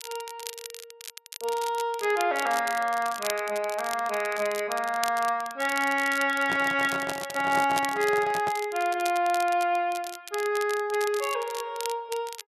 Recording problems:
crackling; vinyl, SNR 13 dB
microphone handling noise; from 6.5 to 8.5 s; peak -3 dB vs average level

